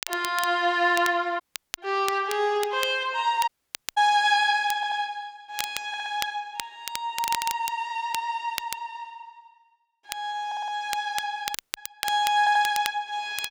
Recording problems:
crackle; vinyl, SNR 10 dB
dropout; at 1.5 s, at 3.5 s and at 12 s
audio stuttering; 4 times, first at 5 s

